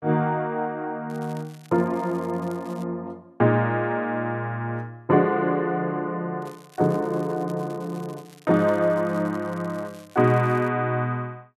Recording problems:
crackle; from 1 to 3 s and from 6.5 to 11 s; loose cable, SNR 27 dB

